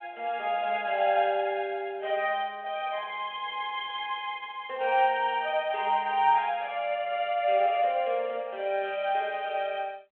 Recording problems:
phone line; 300 Hz to 3.4 kHz, G.726

